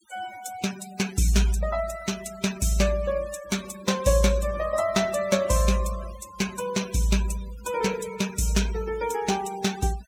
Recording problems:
denoising artefacts; signal-to-artefact ratio 14 dB

